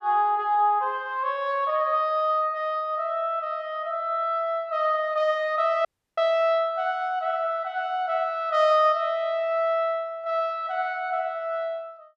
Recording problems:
audio cutting out; at 6 s

